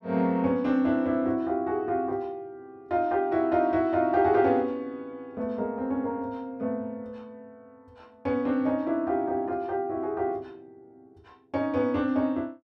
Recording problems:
none

